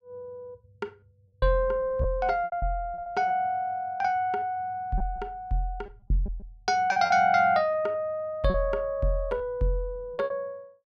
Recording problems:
lost packets; 8% of the sound replaced, filled with repeated pitch periods

